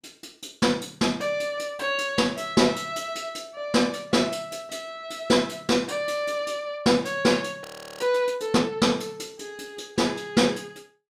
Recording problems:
audio freezing; at 7.5 s

